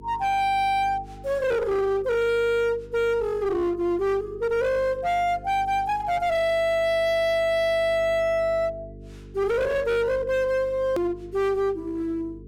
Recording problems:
distorted audio; hard clipping, uneven, signal-to-distortion ratio 6 dB
mains hum; 50 Hz, harmonics up to 450 Hz, SNR 21 dB
click at an edit; at 11 s

